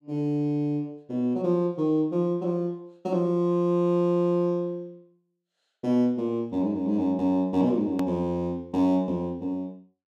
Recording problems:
click at an edit; at 8 s

